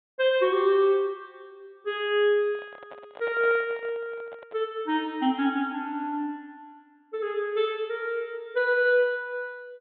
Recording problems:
treble missing; nothing above 4 kHz
handling noise; from 2.5 to 4.5 s; peak -10 dB vs average level

